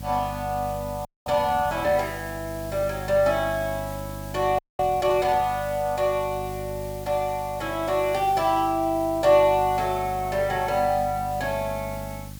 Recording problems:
hum; 50 Hz, harmonics up to 550 Hz, SNR 14 dB
hiss; slope +2 dB per octave, SNR 19 dB
audio freezing; at 1 s and at 4.5 s

